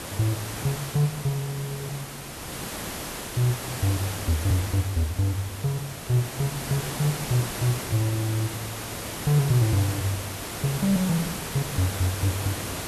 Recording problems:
background hiss; slope -3 dB per octave, SNR 6 dB

